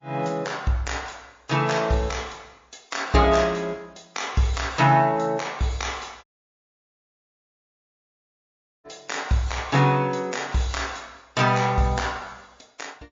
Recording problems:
lossy compression; MP3, log-spectral distance 7 dB
audio cutting out; at 6 s for 2.5 s

